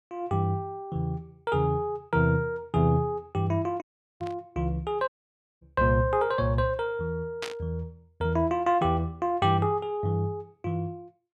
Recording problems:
audio cutting out; at 4 s and at 5 s for 0.5 s
burst of static; at 4 s and at 7.5 s; peak -2 dB vs average level

